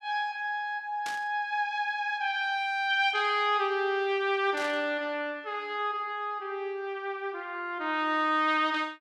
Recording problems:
static burst; at 1 s and at 4.5 s; peak -6 dB vs average level

